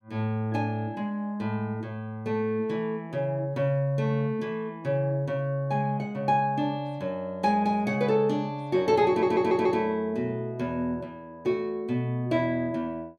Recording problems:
audio stuttering; at 9 s

